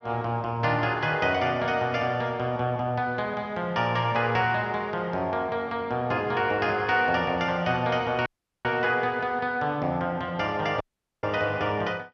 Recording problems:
audio cutting out; at 8.5 s and at 11 s

